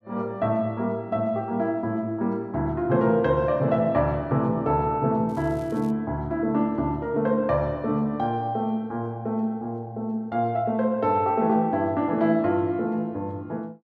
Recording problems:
crackle; at 5.5 s; loose cable, SNR 29 dB

